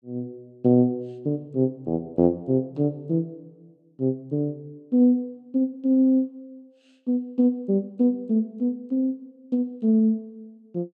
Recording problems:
none

